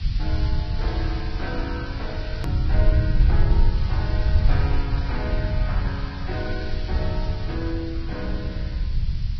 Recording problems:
lossy codec; Vorbis, then Vorbis, log-spectral distance 5 dB, nothing above 13.7 kHz
background hiss; SNR 10 dB
low-frequency rumble; below 88 Hz, SNR -7 dB
click at an edit; at 2.5 s

